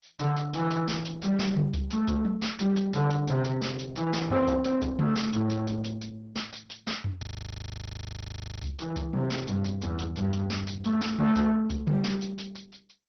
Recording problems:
lossy compression; MP2, then Opus, log-spectral distance 5 dB, nothing above 5.8 kHz
distortion; soft clipping, signal-to-distortion ratio 9 dB
frozen audio; at 7 s for 1.5 s

